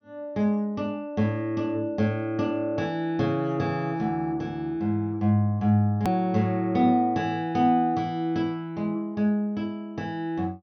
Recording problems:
low-pass filter; nothing above 6.3 kHz
hard cut with a click; at 6 s

